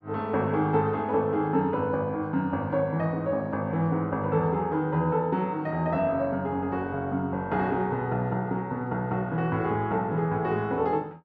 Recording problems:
none

